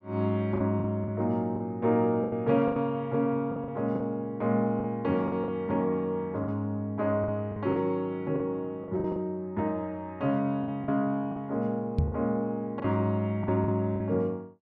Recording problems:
lost packets; 8% of the sound replaced, filled with the last packet
microphone bump; at 12 s; peak +7 dB vs average level

